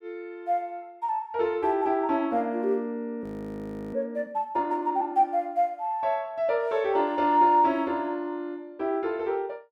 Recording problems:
frozen audio; at 3 s for 0.5 s

